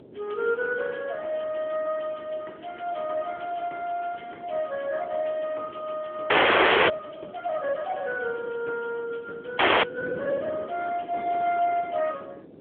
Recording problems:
telephone audio; 300 Hz to 2.6 kHz, AMR-NB
wind on the microphone; below 470 Hz, SNR 15 dB
frozen audio; at 6.5 s for 0.5 s and at 9.5 s

